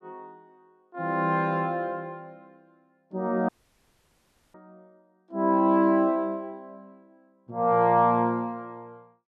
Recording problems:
audio cutting out; at 3.5 s for 1 s

